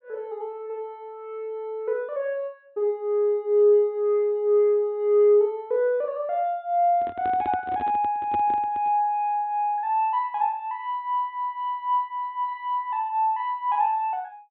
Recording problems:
low-pass filter; nothing above 4 kHz
microphone handling noise; from 7 to 9 s; peak -7 dB vs average level

